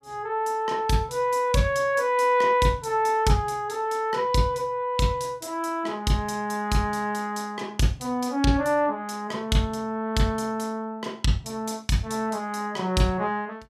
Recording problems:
none

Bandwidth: 14.5 kHz